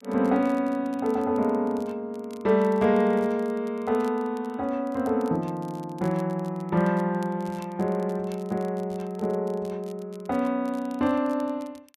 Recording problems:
crackle; vinyl, SNR 28 dB

